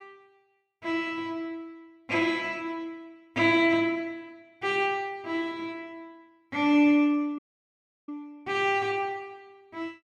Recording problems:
dropout; at 7.5 s for 0.5 s

